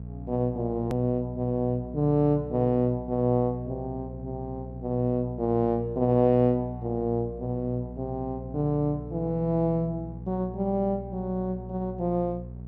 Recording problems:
hum; 60 Hz, harmonics up to 660 Hz, SNR 12 dB
hard cut with a click; at 1 s

